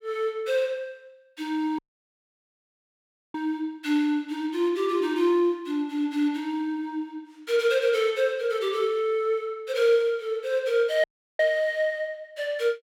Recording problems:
audio cutting out; at 2 s for 1.5 s and at 11 s

